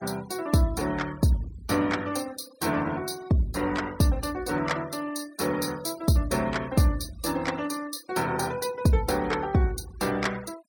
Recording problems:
noise reduction artefacts; signal-to-artefact ratio 20 dB

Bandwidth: 17 kHz